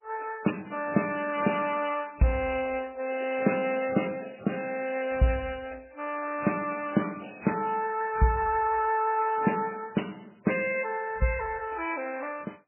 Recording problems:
lossy compression; MP2, then MP3, log-spectral distance 7 dB, nothing above 2.6 kHz

